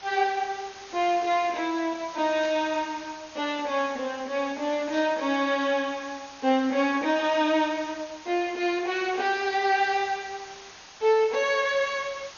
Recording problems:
lossy compression; MP2, log-spectral distance 10 dB, nothing above 6.2 kHz
background hiss; slope 0 dB per octave, SNR 18 dB
burst of static; at 2.5 s and at 5 s; peak -12 dB vs average level

